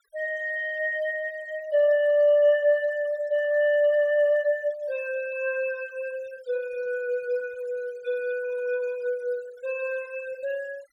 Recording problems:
denoising artefacts; signal-to-artefact ratio 25 dB

